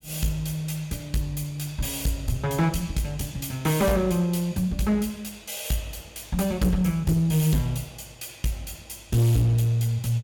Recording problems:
distorted audio; hard clipping, uneven, signal-to-distortion ratio 10 dB

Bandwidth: 17.5 kHz